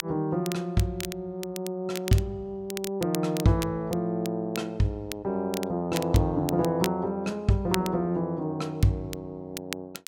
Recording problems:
crackling; vinyl, SNR 12 dB

